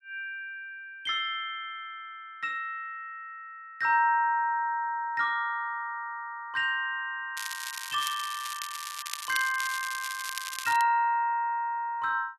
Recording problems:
crackling; from 7.5 to 11 s; loose cable, SNR 7 dB

